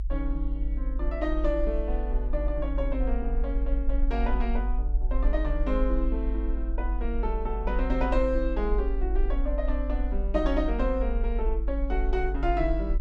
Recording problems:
low-frequency rumble; below 50 Hz, strongest tone 48 Hz, SNR -1 dB

